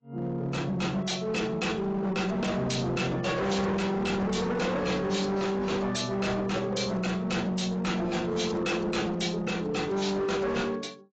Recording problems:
codec artefacts; AAC, log-spectral distance 4 dB, nothing above 7.6 kHz
distorted audio; hard clipping, signal-to-distortion ratio 7 dB

